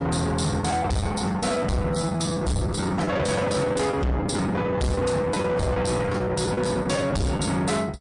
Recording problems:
lossy codec; MP3, log-spectral distance 4 dB
distortion; soft clipping, signal-to-distortion ratio 6 dB
lost packets; 15% of the sound replaced, filled with the last packet

